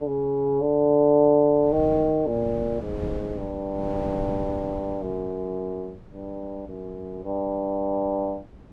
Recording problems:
wind noise; below 300 Hz, SNR 15 dB

